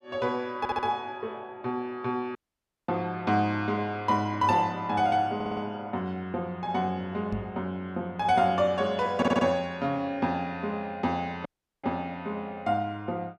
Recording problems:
stutter; at 0.5 s, at 5.5 s and at 9 s
audio cutting out; at 2.5 s for 0.5 s and at 11 s
knock on the microphone; at 7.5 s; peak -1 dB vs average level

